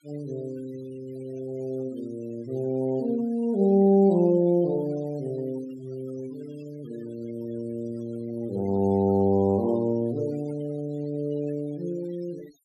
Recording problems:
noise reduction artefacts; signal-to-artefact ratio 24 dB

